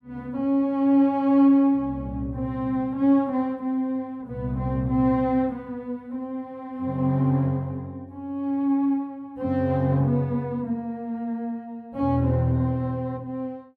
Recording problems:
none

